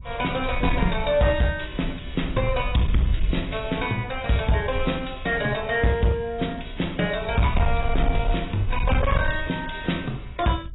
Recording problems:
lossy compression; AAC, log-spectral distance 4 dB, nothing above 3.8 kHz
distortion; hard clipping, uneven, signal-to-distortion ratio 11 dB
wind on the microphone; below 66 Hz, SNR 6 dB

